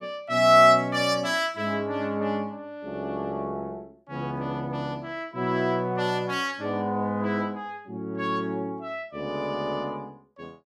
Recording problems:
none

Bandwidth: 14.5 kHz